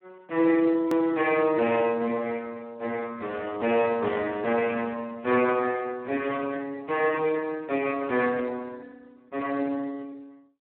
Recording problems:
telephone audio; 260 Hz to 2.9 kHz, Speex
click at an edit; at 1 s

